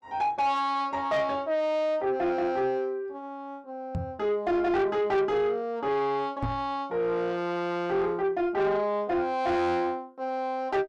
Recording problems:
distorted audio; soft clipping, signal-to-distortion ratio 11 dB
microphone bump; at 4 s and at 6.5 s; peak 0 dB vs average level

